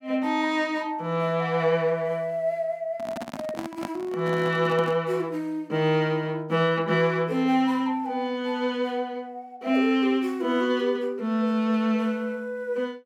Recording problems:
microphone handling noise; from 3 to 5 s; peak -5 dB vs average level

